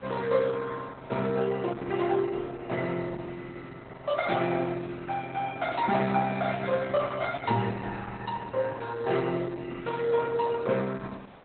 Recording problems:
lossy compression; Opus, log-spectral distance 4 dB, nothing above 4 kHz
wind on the microphone; below 1.2 kHz, SNR 23 dB

